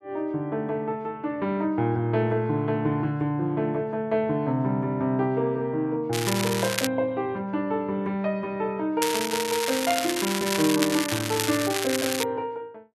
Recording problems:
crackle; at 6 s and from 9 to 12 s; loose cable, SNR 3 dB

